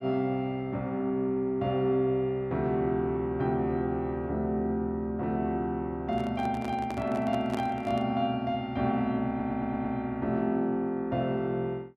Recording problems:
handling noise; from 6 to 8 s; peak -3 dB vs average level
audio stuttering; at 9.5 s

